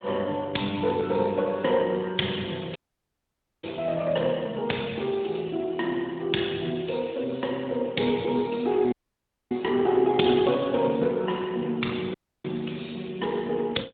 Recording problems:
phone line; 110 Hz to 3.7 kHz, AMR-NB
audio cutting out; at 3 s for 1 s, at 9 s for 0.5 s and at 12 s

